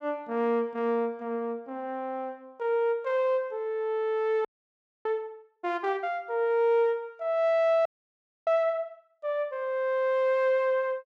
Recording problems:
audio freezing; at 4.5 s for 0.5 s and at 8 s for 0.5 s

